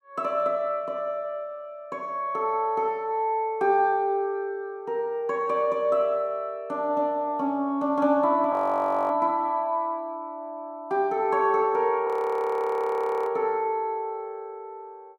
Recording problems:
audio freezing; at 8.5 s for 0.5 s and at 12 s for 1 s

